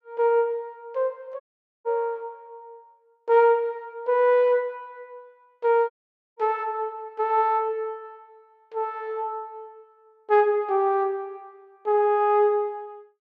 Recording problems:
audio cutting out; at 1.5 s and at 6 s

